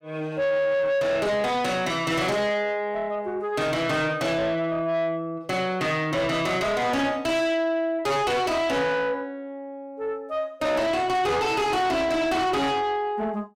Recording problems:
distorted audio; soft clipping, signal-to-distortion ratio 7 dB

